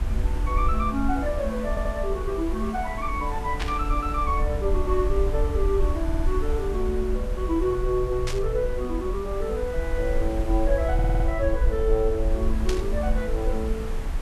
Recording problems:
background hiss; slope -5 dB per octave, SNR 12 dB
low-frequency rumble; below 58 Hz, SNR 2 dB
stutter; at 1.5 s, at 6 s and at 11 s
static burst; at 3.5 s, at 8.5 s and at 13 s; peak 0 dB vs average level

